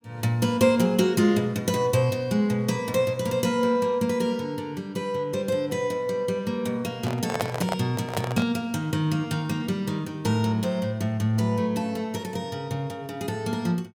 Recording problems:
handling noise; from 7 to 8.5 s; peak +3 dB vs average level

